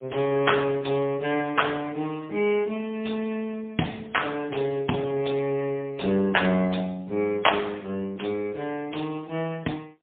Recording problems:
telephone audio; 130 Hz to 3.4 kHz, AMR-NB, then MP3

